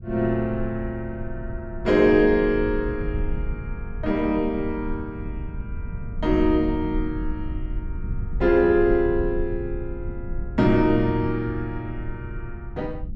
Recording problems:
low-frequency rumble; below 78 Hz, SNR 10 dB

